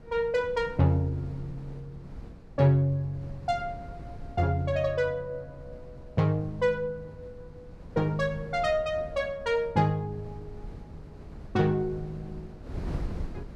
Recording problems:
wind noise; below 170 Hz, SNR 16 dB

